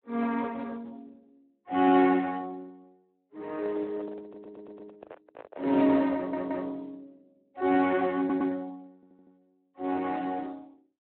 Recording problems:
phone line; 220 Hz to 3 kHz, Speex
handling noise; from 3.5 to 6 s; peak -12 dB vs average level
audio stuttering; 4 times, first at 4 s

